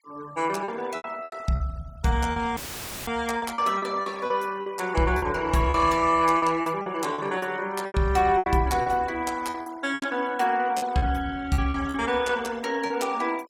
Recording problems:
denoising artefacts; signal-to-artefact ratio 21 dB
lost packets; 11% of the sound replaced, filled with repeated pitch periods
audio cutting out; at 2.5 s for 0.5 s; filled with static

